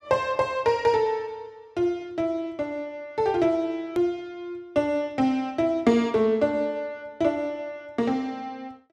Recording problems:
edit click; at 4 s

